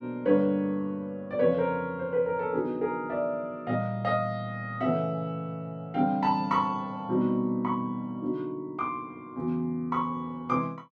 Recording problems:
none

